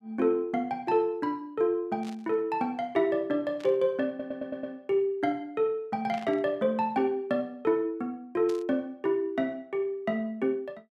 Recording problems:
burst of static; 4 times, first at 2 s; peak -12 dB vs average level
stutter; at 4 s

